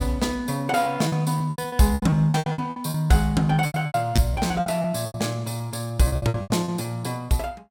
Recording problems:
packet loss; 18% of the sound replaced, filled with repeated pitch periods

